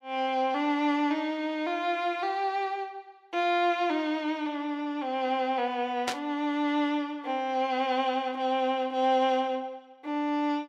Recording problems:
static burst; at 6 s; peak +2 dB vs average level

